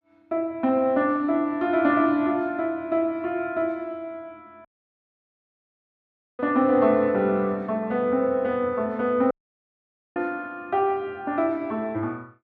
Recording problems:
audio cutting out; at 4.5 s for 1.5 s and at 9.5 s for 1 s

